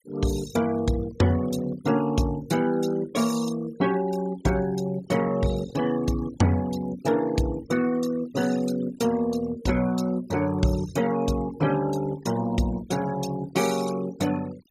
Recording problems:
denoising artefacts; signal-to-artefact ratio 16 dB

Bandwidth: 16 kHz